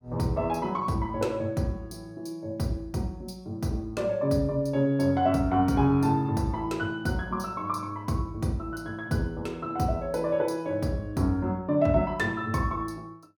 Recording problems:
none

